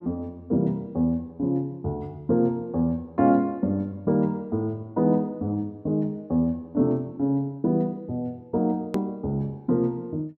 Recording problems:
edit click; at 9 s

